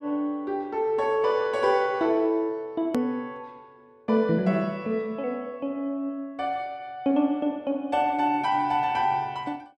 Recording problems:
edit click; at 3 s

